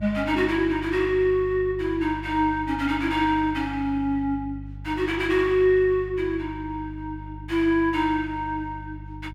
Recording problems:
electrical hum; 50 Hz, harmonics up to 350 Hz, SNR 15 dB

